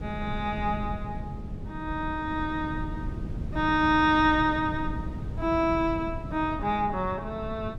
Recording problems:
wind noise; below 180 Hz, SNR 9 dB

